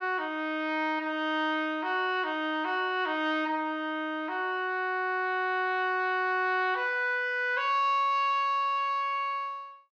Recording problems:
none

